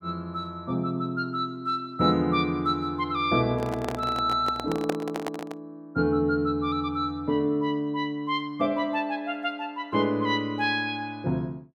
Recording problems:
microphone handling noise; from 3.5 to 5.5 s; peak +3 dB vs average level

